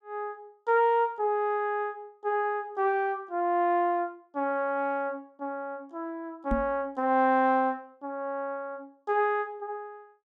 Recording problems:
microphone bump; at 6.5 s; peak +2 dB vs average level

